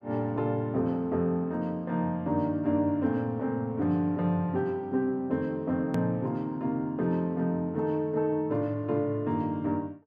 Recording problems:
click at an edit; at 6 s

